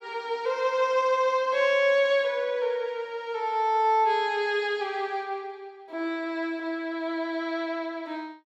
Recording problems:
none

